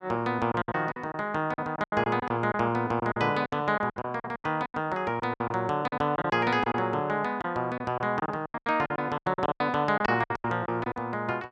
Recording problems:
lost packets; 16% of the sound replaced, filled with silence

